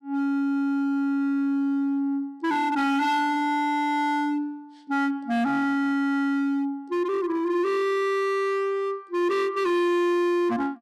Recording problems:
distortion; hard clipping, signal-to-distortion ratio 7 dB

